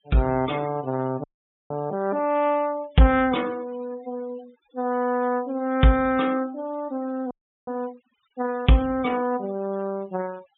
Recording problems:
treble missing; nothing above 3.8 kHz
noise reduction artefacts; signal-to-artefact ratio 23 dB
frozen audio; at 1 s and at 7.5 s

